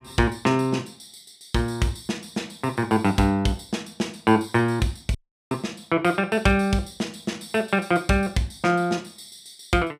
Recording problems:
dropout; at 5 s

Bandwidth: 15.5 kHz